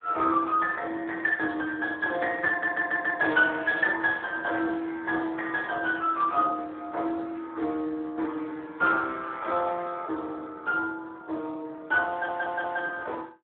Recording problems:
phone line; 280 Hz to 3.5 kHz, Speex
audio stuttering; at 2.5 s and at 12 s

